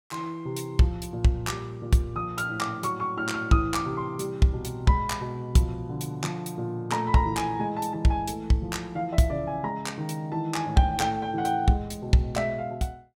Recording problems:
none

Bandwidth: 18 kHz